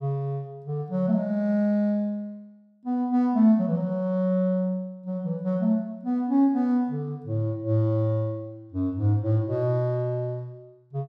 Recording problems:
none

